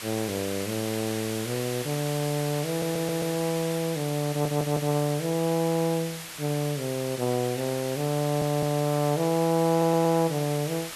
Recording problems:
background hiss; slope +1 dB per octave, SNR 9 dB
audio stuttering; 4 times, first at 2.5 s

